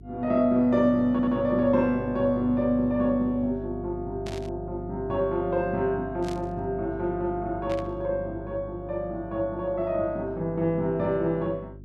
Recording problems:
electrical hum; 50 Hz, harmonics up to 400 Hz, SNR 14 dB
audio stuttering; at 1 s
static burst; at 4.5 s, at 6 s and at 7.5 s; peak -10 dB vs average level

